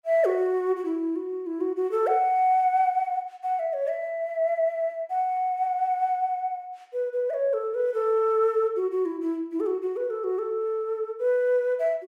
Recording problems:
none

